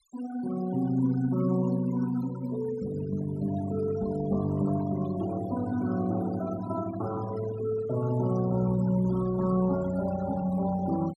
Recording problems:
denoising artefacts; signal-to-artefact ratio 16 dB

